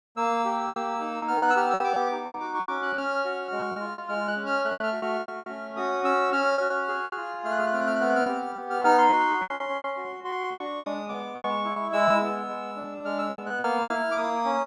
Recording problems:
packet loss; 14% of the sound replaced, filled with repeated pitch periods

